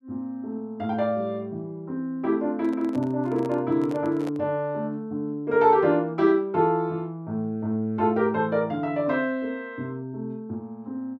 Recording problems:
handling noise; from 2.5 to 4.5 s; peak -7 dB vs average level

